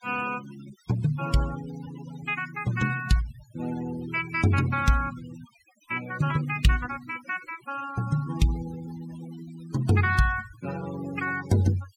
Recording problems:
denoising artefacts; signal-to-artefact ratio 15 dB

